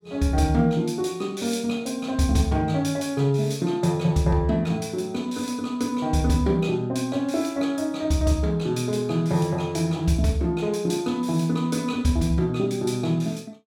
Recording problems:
none

